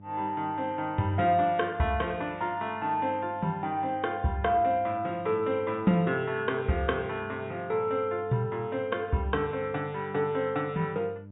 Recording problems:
treble cut off; nothing above 4 kHz
hum; 50 Hz, harmonics up to 600 Hz, SNR 19 dB

